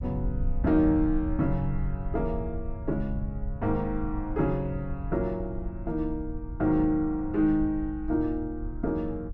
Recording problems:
low-frequency rumble; below 74 Hz, SNR 8 dB

